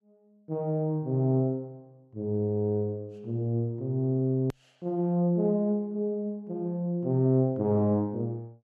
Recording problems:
edit click; at 4.5 s

